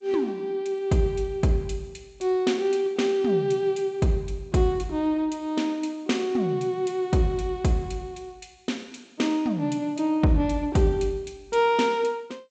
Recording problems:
lossy compression; G.722, log-spectral distance 2 dB, nothing above 7.6 kHz

